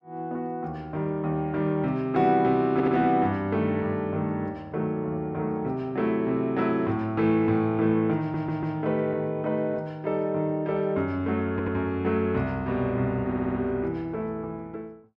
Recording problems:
audio stuttering; 4 times, first at 2.5 s

